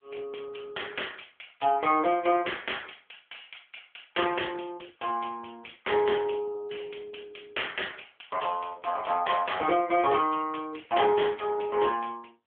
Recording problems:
telephone audio; 320 Hz to 3.4 kHz, AMR-NB

